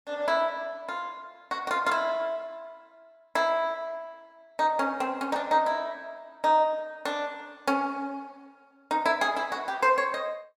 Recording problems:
none

